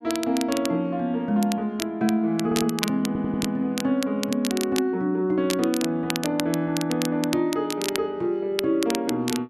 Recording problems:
crackling; vinyl, SNR 9 dB
stutter; at 2.5 s and at 3 s

